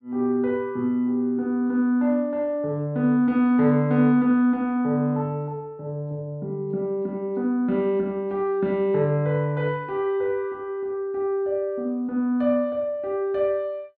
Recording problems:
none

